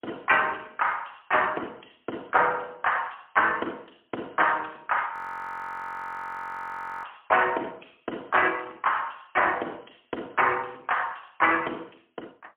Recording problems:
telephone audio; 280 Hz to 3.3 kHz, AMR-NB, then MP3
audio freezing; at 5 s for 2 s

